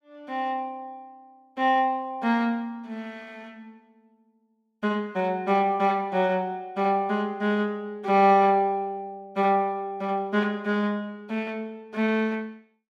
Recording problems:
none

